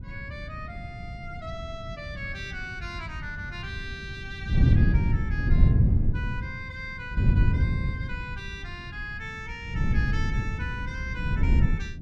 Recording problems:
wind noise; below 130 Hz, SNR -11 dB

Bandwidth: 13 kHz